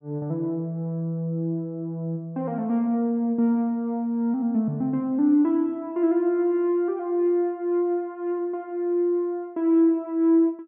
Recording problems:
low-pass filter; nothing above 3.5 kHz

